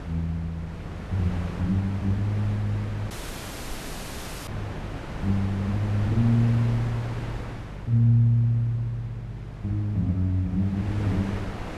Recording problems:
hum; 50 Hz, harmonics up to 400 Hz, SNR 16 dB
wind noise; below 850 Hz, SNR 12 dB
audio cutting out; at 3 s for 1.5 s

